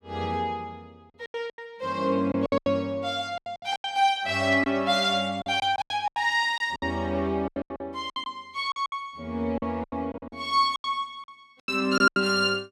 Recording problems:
packet loss; 15% of the sound replaced, filled with silence
static burst; at 4.5 s; peak -13 dB vs average level

